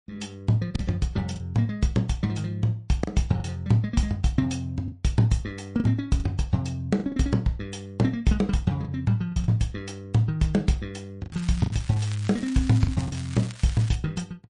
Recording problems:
lossy compression; MP3, log-spectral distance 2 dB
lost packets; 5% of the sound replaced, filled with the last packet
crackle; from 11 to 14 s; loose cable, SNR 17 dB

